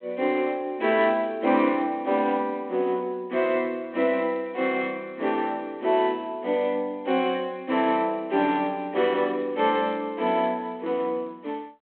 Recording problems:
telephone audio; 240 Hz to 3.5 kHz, G.726

